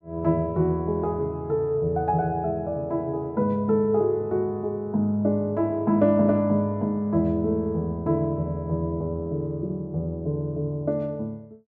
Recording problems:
treble cut off; nothing above 7.7 kHz

